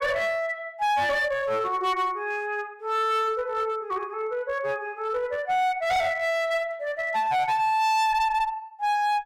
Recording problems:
distorted audio; hard clipping, uneven, signal-to-distortion ratio 7 dB

